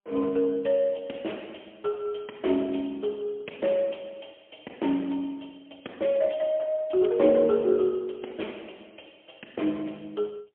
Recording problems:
telephone audio; 240 Hz to 3.4 kHz, AMR-NB, then MP3

